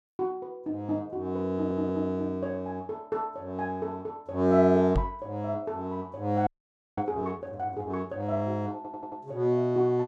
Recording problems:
stutter; at 1.5 s and at 9 s
microphone bump; at 5 s; peak +5 dB vs average level
frozen audio; at 6.5 s for 0.5 s

